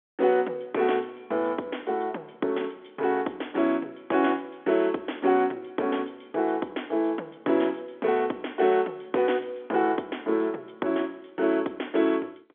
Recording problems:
phone line; 240 Hz to 3.5 kHz, G.711

